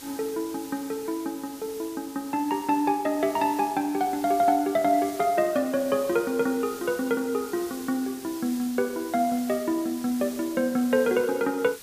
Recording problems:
background hiss; SNR 16 dB

